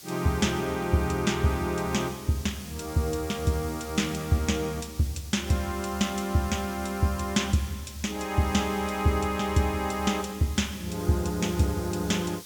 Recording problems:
background hiss; SNR 16 dB

